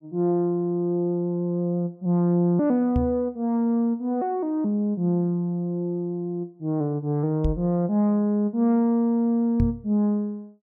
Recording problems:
knock on the microphone; at 3 s, at 7.5 s and at 9.5 s; peak +3 dB vs average level

